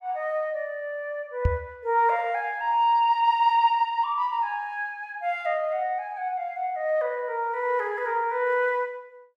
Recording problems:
microphone bump; at 1.5 s; peak +6 dB vs average level

